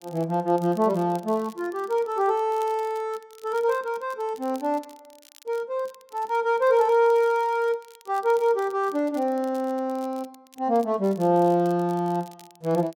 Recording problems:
crackling; vinyl, SNR 27 dB

